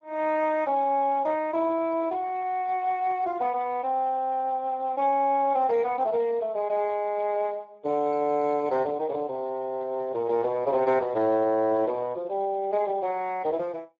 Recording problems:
lossy codec; Speex, log-spectral distance 2 dB

